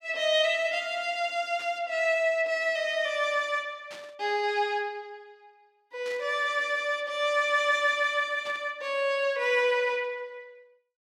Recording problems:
burst of static; 4 times, first at 1.5 s; peak -13 dB vs average level

